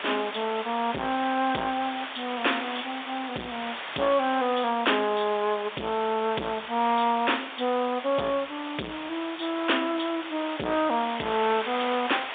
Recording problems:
phone line; 280 Hz to 3.6 kHz, G.711
distorted audio; hard clipping, signal-to-distortion ratio 11 dB
hiss; SNR 9 dB

